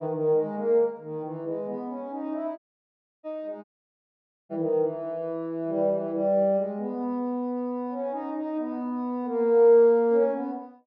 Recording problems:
dropout; at 2.5 s for 0.5 s and at 3.5 s for 1 s

